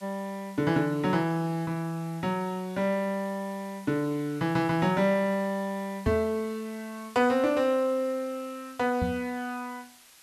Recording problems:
hiss; slope +1 dB per octave, SNR 23 dB
knock on the microphone; at 6 s and at 9 s; peak +1 dB vs average level

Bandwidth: 13 kHz